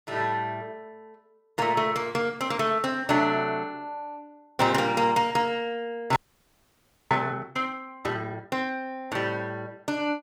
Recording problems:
frozen audio; at 6 s for 1 s

